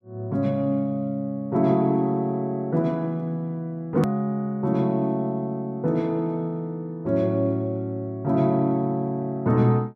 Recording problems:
hard cut with a click; at 4 s

